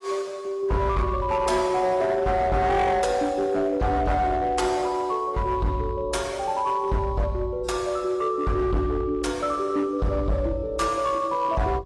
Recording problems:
codec artefacts; AAC, log-spectral distance 2 dB, nothing above 11.3 kHz
distortion; hard clipping, signal-to-distortion ratio 11 dB

